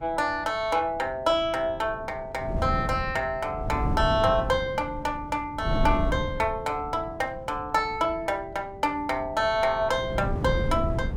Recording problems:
wind noise; below 200 Hz, SNR 6 dB

